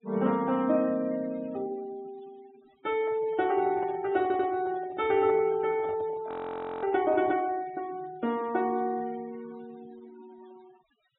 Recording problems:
treble missing; nothing above 3.9 kHz
noise reduction artefacts; signal-to-artefact ratio 23 dB
microphone handling noise; from 3 to 7.5 s; peak -9 dB vs average level
audio stuttering; at 4 s
audio freezing; at 6.5 s for 0.5 s

